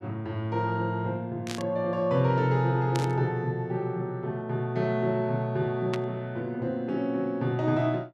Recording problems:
burst of static; at 1.5 s, at 3 s and at 6 s; peak -3 dB vs average level

